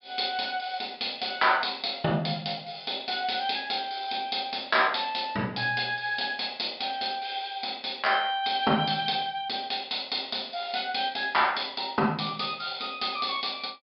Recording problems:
treble missing; nothing above 5.2 kHz

